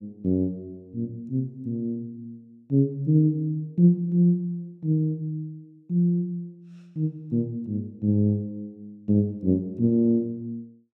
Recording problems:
none

